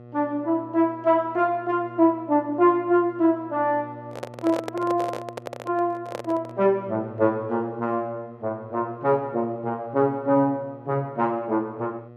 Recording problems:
electrical hum; 60 Hz, harmonics up to 1.3 kHz, SNR 20 dB
microphone handling noise; from 4 to 6.5 s; peak -3 dB vs average level

